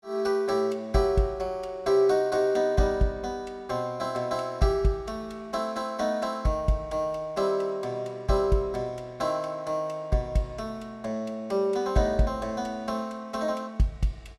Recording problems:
none

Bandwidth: 16 kHz